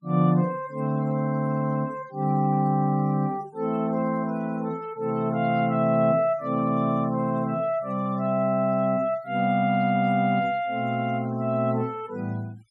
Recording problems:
noise reduction artefacts; signal-to-artefact ratio 28 dB

